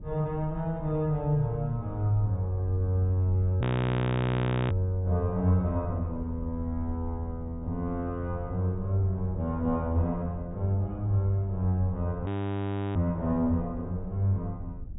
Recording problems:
low-pass filter; nothing above 4 kHz
rumble; below 120 Hz, SNR 13 dB
audio freezing; at 3.5 s for 1 s and at 12 s for 0.5 s

